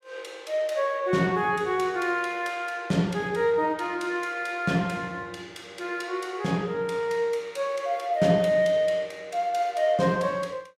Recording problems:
none

